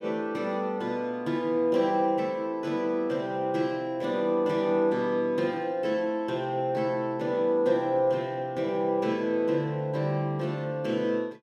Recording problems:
none

